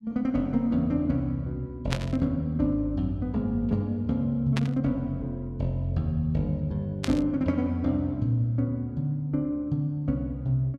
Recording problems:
burst of static; at 2 s, at 4.5 s and at 7 s; peak 0 dB vs average level

